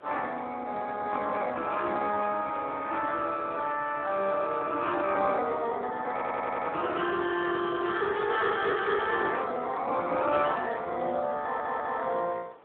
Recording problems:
telephone audio; 320 Hz to 3.7 kHz, Speex
wind on the microphone; below 1.2 kHz, SNR 23 dB
audio stuttering; at 6 s and at 11 s

